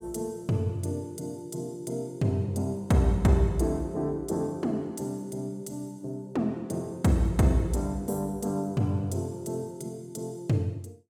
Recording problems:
none

